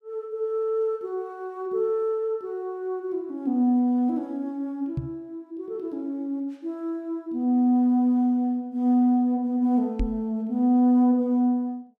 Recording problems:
microphone bump; at 5 s and at 10 s; peak +1 dB vs average level

